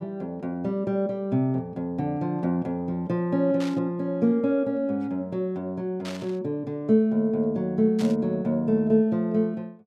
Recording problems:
burst of static; at 3.5 s, at 6 s and at 8 s; peak -9 dB vs average level

